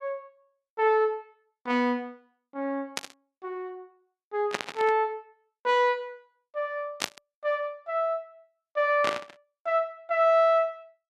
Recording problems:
static burst; 4 times, first at 3 s; peak +3 dB vs average level

